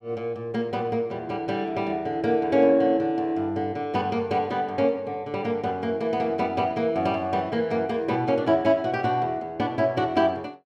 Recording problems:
none

